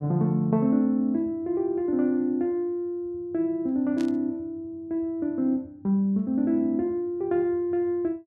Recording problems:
static burst; at 4 s; peak -12 dB vs average level

